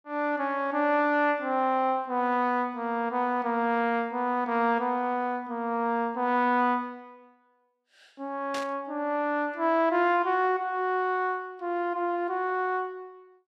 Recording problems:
static burst; at 8.5 s; peak -6 dB vs average level

